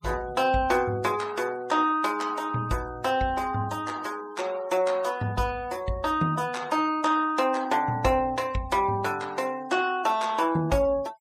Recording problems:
noise reduction artefacts; signal-to-artefact ratio 22 dB

